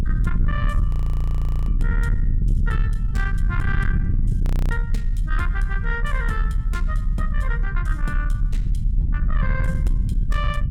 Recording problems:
distortion; soft clipping, signal-to-distortion ratio 10 dB
rumble; below 76 Hz, SNR -6 dB
frozen audio; at 1 s for 1 s and at 4.5 s

